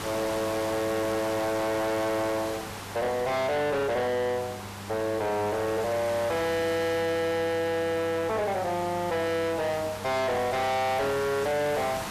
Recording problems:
distortion; hard clipping, uneven, signal-to-distortion ratio 6 dB
hum; 50 Hz, harmonics up to 900 Hz, SNR 17 dB
hiss; slope -3 dB per octave, SNR 10 dB

